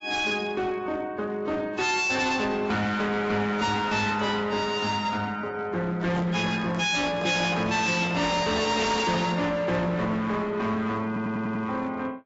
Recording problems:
lossy codec; AAC, log-spectral distance 4 dB, nothing above 7.6 kHz
distortion; hard clipping, signal-to-distortion ratio 7 dB
microphone handling noise; from 6 to 9.5 s; peak -2 dB vs average level
stutter; at 11 s

